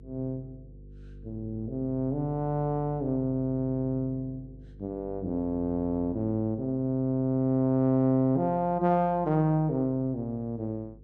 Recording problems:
hum; 50 Hz, harmonics up to 500 Hz, SNR 20 dB

